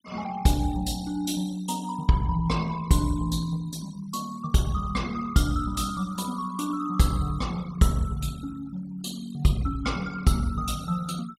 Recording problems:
noise reduction artefacts; signal-to-artefact ratio 20 dB

